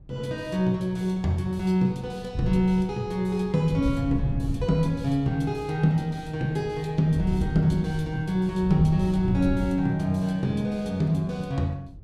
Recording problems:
wind on the microphone; below 130 Hz, SNR 8 dB

